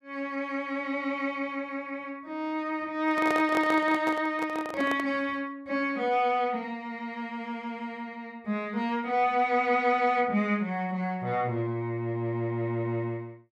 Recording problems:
microphone handling noise; from 3 to 5 s; peak 0 dB vs average level

